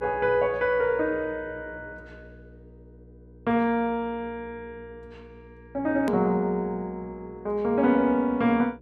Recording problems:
electrical hum; 60 Hz, harmonics up to 480 Hz, SNR 24 dB
click at an edit; at 6 s

